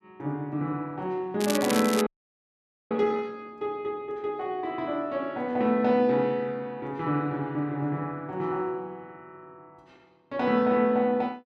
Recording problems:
crackling; at 1.5 s; loose cable, SNR 6 dB
frozen audio; at 2 s for 1 s

